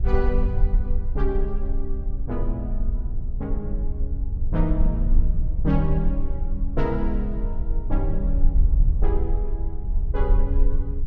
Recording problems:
low-frequency rumble; below 50 Hz, strongest tone 24 Hz, SNR -4 dB

